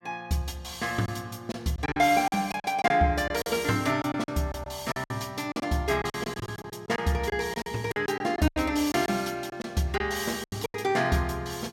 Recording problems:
lost packets; 12% of the sound replaced, filled with silence

